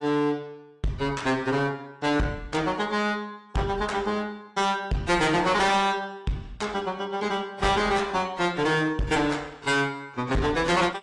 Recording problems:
lossy codec; AAC, log-spectral distance 3 dB, nothing above 10.1 kHz
distortion; hard clipping, uneven, signal-to-distortion ratio 6 dB

